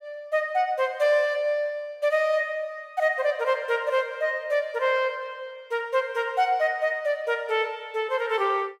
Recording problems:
none

